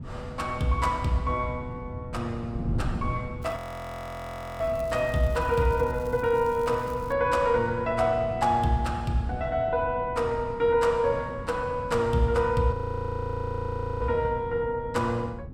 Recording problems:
wind noise; below 170 Hz, SNR 12 dB
crackle; from 3.5 to 7 s; loose cable, SNR 27 dB
audio freezing; at 3.5 s for 1 s and at 13 s for 1.5 s

